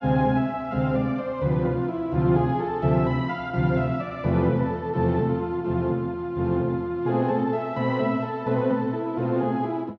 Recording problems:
none

